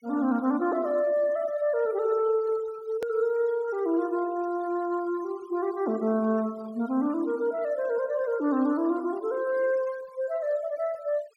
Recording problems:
noise reduction artefacts; signal-to-artefact ratio 23 dB
hard cut with a click; at 3 s

